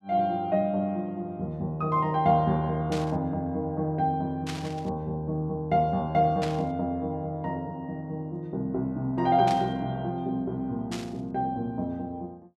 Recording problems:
static burst; 5 times, first at 3 s; peak -4 dB vs average level

